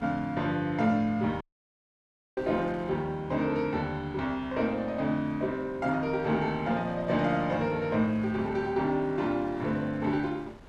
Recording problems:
wind noise; below 980 Hz, SNR 22 dB
audio cutting out; at 1.5 s for 1 s

